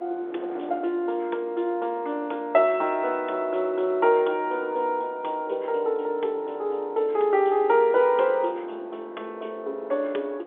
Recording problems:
phone line; 280 Hz to 3.8 kHz, G.711
wind noise; below 690 Hz, SNR 21 dB

